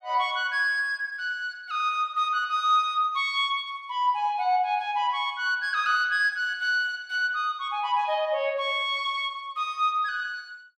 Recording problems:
none

